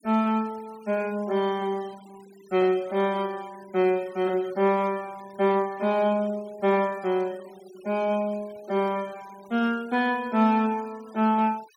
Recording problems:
denoising artefacts; signal-to-artefact ratio 25 dB

